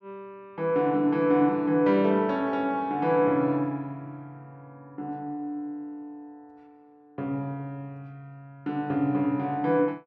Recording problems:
none

